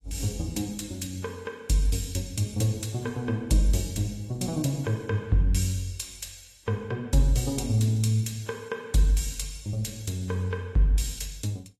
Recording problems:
lossy compression; AAC, log-spectral distance 3 dB

